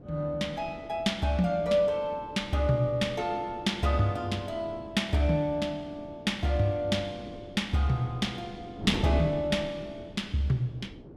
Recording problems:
wind on the microphone; below 390 Hz, SNR 14 dB

